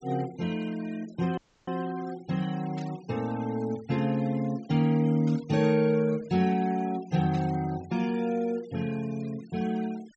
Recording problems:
treble missing; nothing above 8 kHz
denoising artefacts; signal-to-artefact ratio 21 dB
audio cutting out; at 1.5 s
burst of static; at 3 s, at 5.5 s and at 7.5 s; peak -14 dB vs average level

